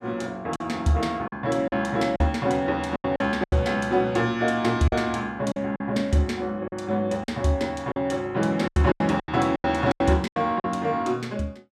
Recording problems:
lost packets; 10% of the sound replaced, filled with silence

